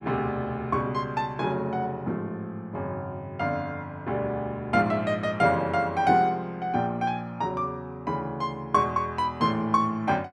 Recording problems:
none

